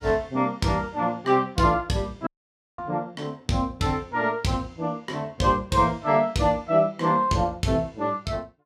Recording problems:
audio cutting out; at 2.5 s for 0.5 s

